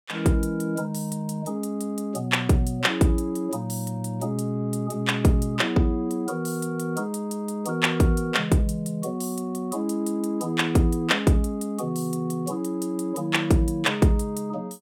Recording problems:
none

